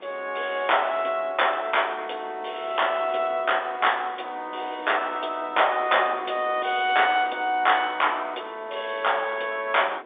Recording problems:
telephone audio; 280 Hz to 3.6 kHz, G.711
wind noise; below 1.1 kHz, SNR 21 dB

